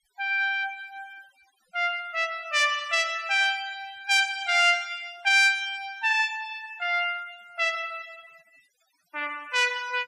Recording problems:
denoising artefacts; signal-to-artefact ratio 27 dB

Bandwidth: 15 kHz